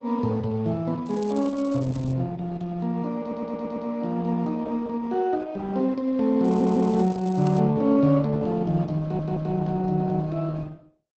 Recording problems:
codec artefacts; Opus, log-spectral distance 2 dB
crackling; from 1 to 2 s and from 6.5 to 7.5 s; loose cable, SNR 25 dB
stutter; at 3 s, at 6.5 s and at 9 s

